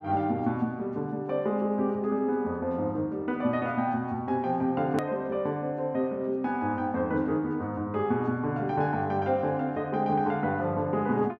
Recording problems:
hard cut with a click; at 5 s

